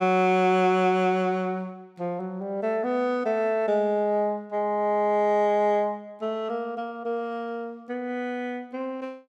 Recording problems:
none

